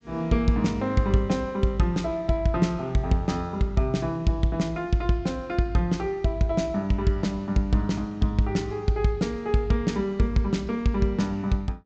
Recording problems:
treble cut off; nothing above 8 kHz

